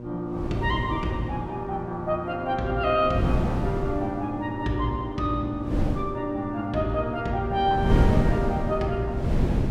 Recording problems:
hum; 60 Hz, harmonics up to 1.1 kHz, SNR 12 dB
wind on the microphone; below 240 Hz, SNR 1 dB

